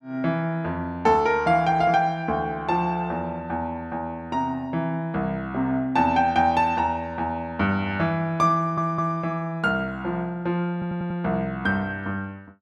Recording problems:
audio stuttering; at 8.5 s and at 11 s

